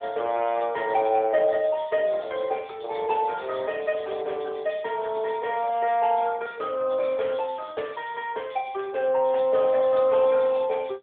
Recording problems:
phone line; 340 Hz to 3.5 kHz, AMR-NB

